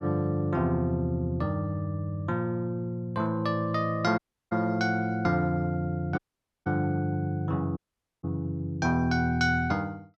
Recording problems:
audio cutting out; at 4 s, at 6 s and at 8 s

